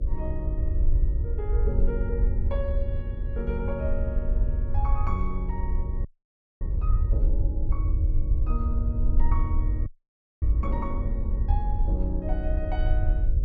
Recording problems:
hum; 50 Hz, harmonics up to 600 Hz, SNR 10 dB
low-frequency rumble; below 66 Hz, SNR -8 dB
frozen audio; at 6 s for 0.5 s and at 10 s for 0.5 s

